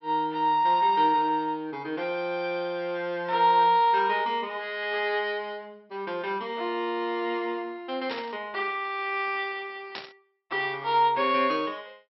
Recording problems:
treble cut off; nothing above 5.6 kHz
static burst; at 8 s and at 10 s; peak -5 dB vs average level

